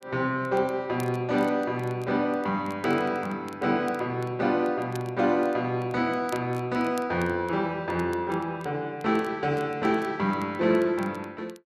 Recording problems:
crackle; vinyl, SNR 26 dB

